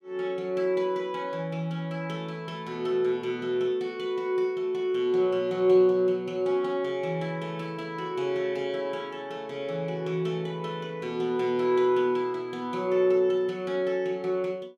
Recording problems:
none

